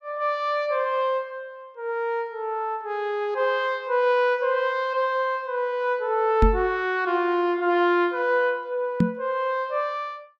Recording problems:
microphone thump; at 6.5 s and at 9 s; peak +7 dB vs average level

